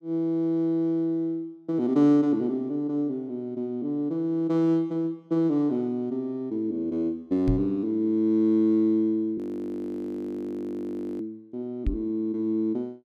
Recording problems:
microphone thump; at 7.5 s and at 12 s; peak +3 dB vs average level
frozen audio; at 9.5 s for 2 s

